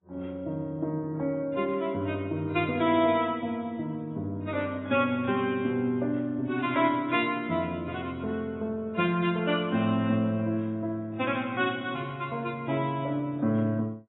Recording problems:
codec artefacts; AAC, log-spectral distance 2 dB, nothing above 3.5 kHz

